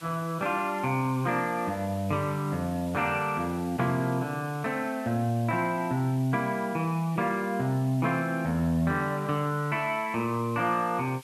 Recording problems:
hiss; SNR 22 dB

